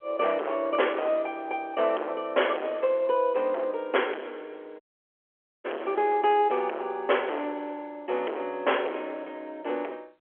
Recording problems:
phone line; 320 Hz to 3.3 kHz, G.711
distortion; hard clipping, signal-to-distortion ratio 9 dB
dropout; at 5 s for 1 s

